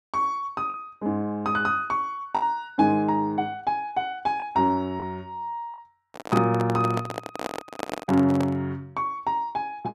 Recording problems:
lost packets; 2% of the sound replaced, filled with the last packet
handling noise; from 6 to 8.5 s; peak +2 dB vs average level

